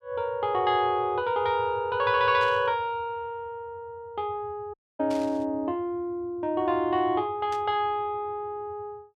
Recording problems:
burst of static; at 2.5 s, at 5 s and at 7.5 s; peak -11 dB vs average level
dropout; at 4.5 s

